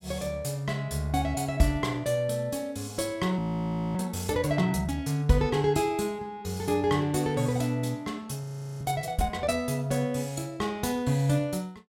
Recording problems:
audio freezing; at 3.5 s for 0.5 s and at 8.5 s

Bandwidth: 16 kHz